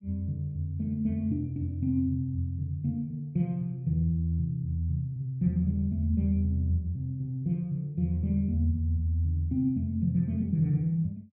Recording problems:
none

